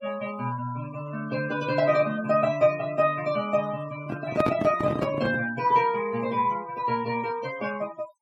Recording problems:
denoising artefacts; signal-to-artefact ratio 19 dB
microphone handling noise; from 4 to 5.5 s; peak +4 dB vs average level

